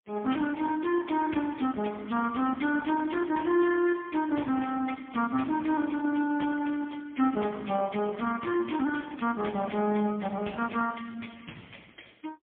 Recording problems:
phone line; 170 Hz to 3.4 kHz, AMR-NB, then MP3

